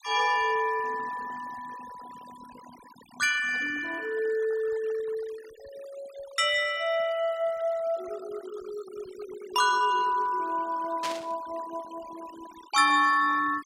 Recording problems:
denoising artefacts; signal-to-artefact ratio 21 dB
burst of static; at 11 s; peak -3 dB vs average level

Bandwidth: 16 kHz